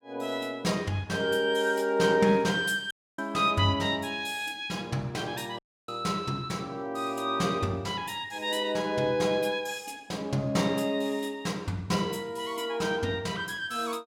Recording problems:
dropout; at 3 s and at 5.5 s

